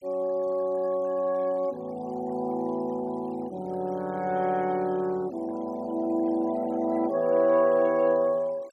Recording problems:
denoising artefacts; signal-to-artefact ratio 25 dB

